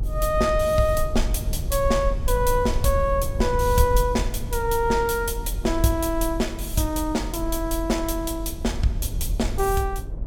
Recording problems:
rumble; below 60 Hz, SNR 6 dB
wind on the microphone; below 320 Hz, SNR 17 dB

